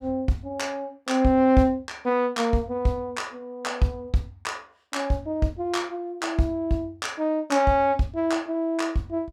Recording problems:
none

